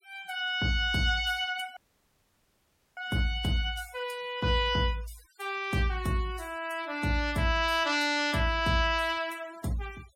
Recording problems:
noise reduction artefacts; signal-to-artefact ratio 23 dB
audio cutting out; at 2 s for 1 s

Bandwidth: 16.5 kHz